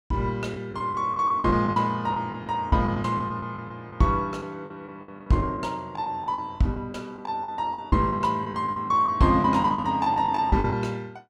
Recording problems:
packet loss; 13% of the sound replaced, filled with the last packet

